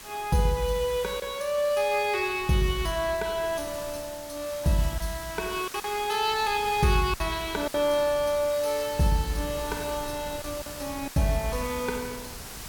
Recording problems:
hiss; slope 0 dB per octave, SNR 13 dB
wind noise; below 380 Hz, SNR 19 dB
packet loss; 3% of the sound replaced, filled with silence

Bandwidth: 17.5 kHz